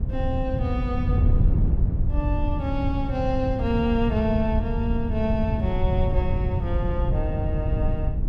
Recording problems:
wind noise; below 110 Hz, SNR -2 dB

